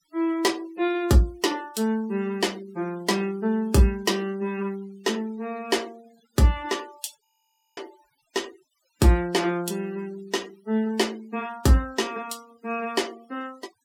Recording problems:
denoising artefacts; signal-to-artefact ratio 24 dB
frozen audio; at 7.5 s for 0.5 s

